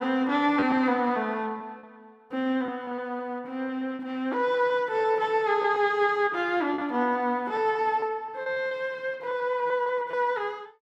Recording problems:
lost packets; 8% of the sound replaced, filled with repeated pitch periods

